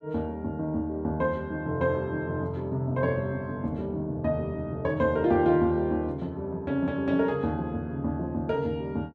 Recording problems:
none

